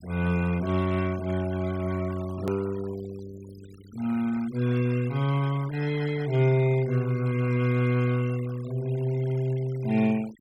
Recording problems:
denoising artefacts; signal-to-artefact ratio 20 dB
edit click; at 2.5 s

